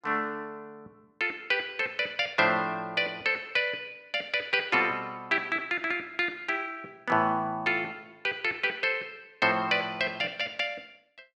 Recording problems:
none

